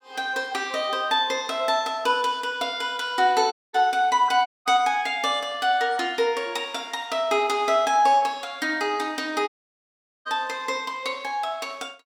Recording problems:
dropout; at 3.5 s, at 4.5 s and at 9.5 s for 1 s

